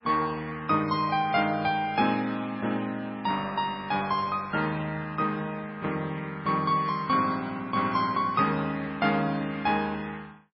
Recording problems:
codec artefacts; MP3, log-spectral distance 2 dB, nothing above 4.5 kHz

